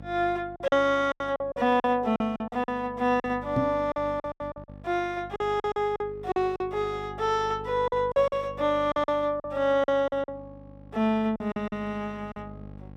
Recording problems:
hum; 50 Hz, harmonics up to 1.1 kHz, SNR 19 dB
packet loss; 12% of the sound replaced, filled with silence
microphone thump; at 3.5 s; peak +3 dB vs average level

